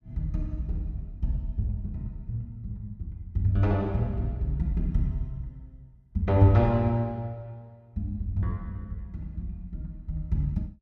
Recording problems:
none

